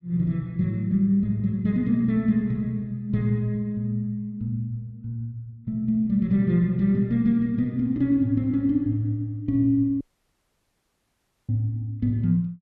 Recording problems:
dropout; at 10 s for 1.5 s

